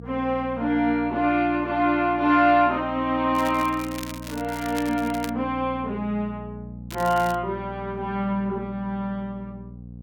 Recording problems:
electrical hum; 60 Hz, harmonics up to 540 Hz, SNR 15 dB
crackle; from 3.5 to 5.5 s and at 7 s; loose cable, SNR 16 dB

